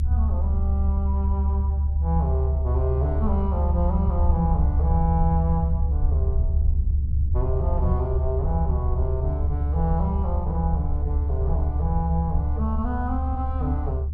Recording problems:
low-frequency rumble; below 74 Hz, strongest tone 72 Hz, SNR -5 dB

